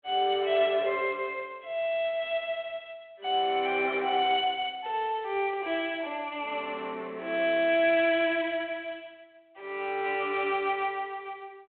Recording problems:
phone line; 260 Hz to 3.6 kHz, G.726

